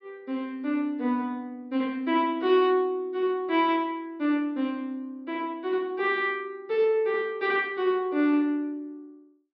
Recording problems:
low-pass filter; nothing above 5.5 kHz

